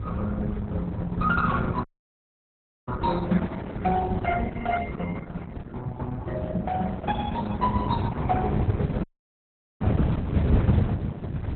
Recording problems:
lossy codec; Opus, then Opus, log-spectral distance 3 dB, nothing above 4 kHz
low-frequency rumble; below 130 Hz, SNR -3 dB
audio cutting out; at 2 s for 1 s and at 9 s for 1 s

